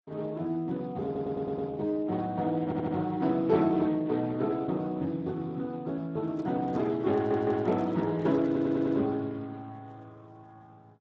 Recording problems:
lossy codec; Speex, log-spectral distance 2 dB
stutter; 4 times, first at 1 s
microphone handling noise; from 6 to 9 s; peak -10 dB vs average level

